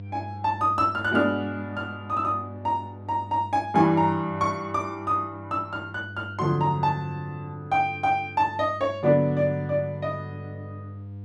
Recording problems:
hum; 50 Hz, harmonics up to 500 Hz, SNR 15 dB

